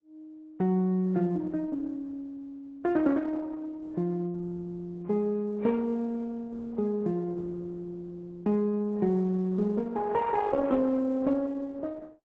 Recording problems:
lossy codec; AAC, then Opus, log-spectral distance 2 dB

